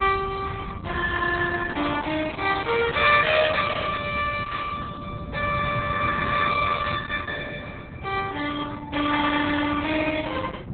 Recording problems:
codec artefacts; Opus, log-spectral distance 5 dB, nothing above 3.9 kHz
wind on the microphone; below 200 Hz, SNR 12 dB

